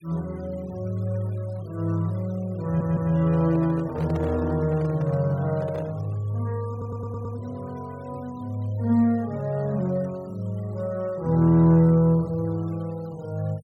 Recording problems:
denoising artefacts; signal-to-artefact ratio 27 dB
audio stuttering; at 2.5 s and at 6.5 s
handling noise; from 3 to 6 s; peak -7 dB vs average level

